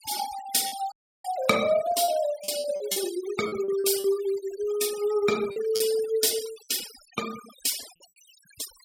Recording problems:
denoising artefacts; signal-to-artefact ratio 13 dB
lost packets; 7% of the sound replaced, filled with repeated pitch periods
audio cutting out; at 1 s

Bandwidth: 17 kHz